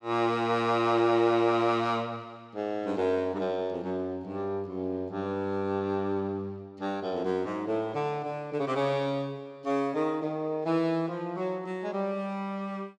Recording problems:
none

